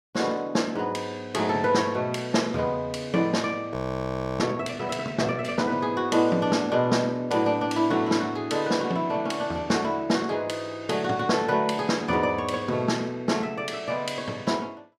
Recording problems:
audio freezing; at 3.5 s for 0.5 s

